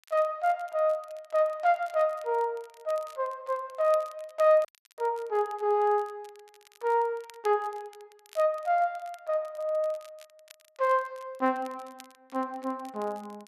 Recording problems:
crackling; vinyl, SNR 27 dB
dropout; at 4.5 s

